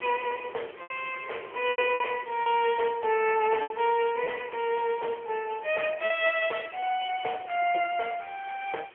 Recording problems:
telephone audio; 340 Hz to 3.3 kHz, AMR-NB
background hiss; SNR 27 dB
wind noise; below 750 Hz, SNR 21 dB
lost packets; 5% of the sound replaced, filled with repeated pitch periods

